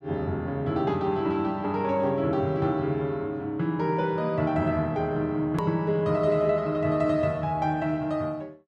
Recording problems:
hard cut with a click; at 5.5 s

